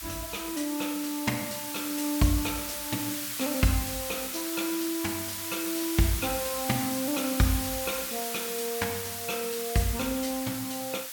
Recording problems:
background hiss; SNR 2 dB

